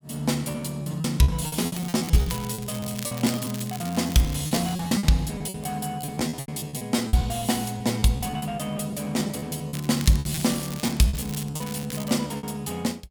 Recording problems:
packet loss; 17% of the sound replaced, filled with repeated pitch periods
crackling; from 2 to 5 s and from 9.5 to 12 s; loose cable, SNR 12 dB

